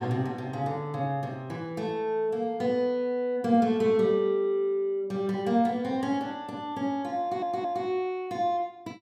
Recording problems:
stutter; at 7 s

